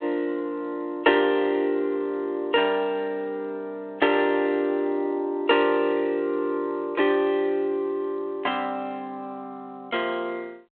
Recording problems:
phone line; 300 Hz to 3.7 kHz, G.726

